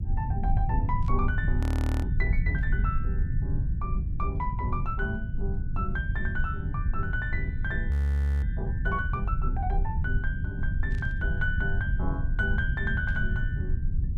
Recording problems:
low-frequency rumble; below 92 Hz, SNR -4 dB
static burst; 4 times, first at 1 s; peak -13 dB vs average level
frozen audio; at 1.5 s and at 8 s for 0.5 s

